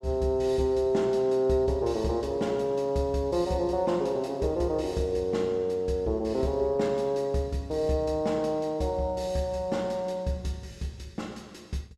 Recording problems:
none

